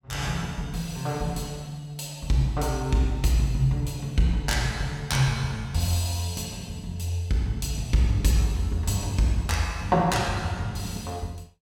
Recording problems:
none

